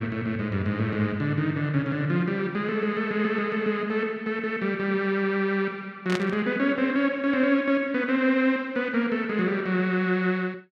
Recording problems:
burst of static; at 6 s; peak -2 dB vs average level

